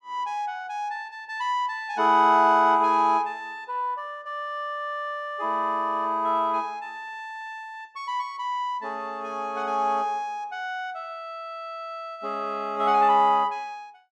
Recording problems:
none

